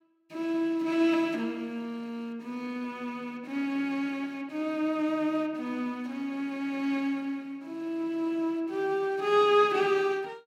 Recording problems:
none

